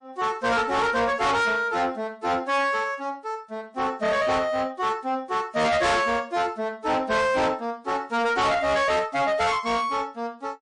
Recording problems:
lossy compression; MP3, log-spectral distance 2 dB, nothing above 9 kHz
distortion; soft clipping, signal-to-distortion ratio 7 dB

